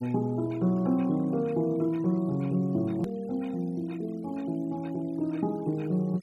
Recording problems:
denoising artefacts; signal-to-artefact ratio 26 dB
edit click; at 3 s

